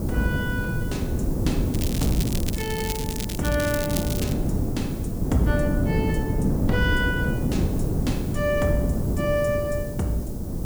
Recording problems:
background hiss; SNR 15 dB
wind on the microphone; below 260 Hz, SNR -2 dB
crackle; from 1.5 to 4.5 s; loose cable, SNR 5 dB

